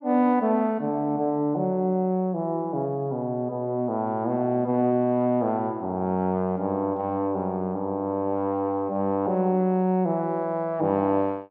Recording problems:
none

